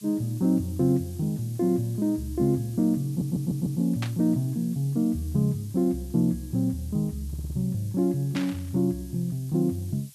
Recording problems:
background hiss; SNR 22 dB
stutter; at 3 s and at 7.5 s
static burst; at 4 s and at 8.5 s; peak -4 dB vs average level

